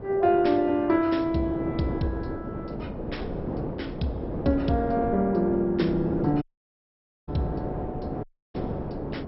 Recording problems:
lossy compression; MP2, log-spectral distance 2 dB, nothing above 5.5 kHz
wind noise; below 490 Hz, SNR 8 dB
audio cutting out; at 6.5 s for 1 s and at 8 s

